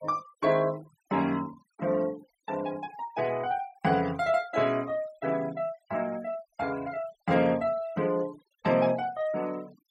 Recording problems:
denoising artefacts; signal-to-artefact ratio 21 dB

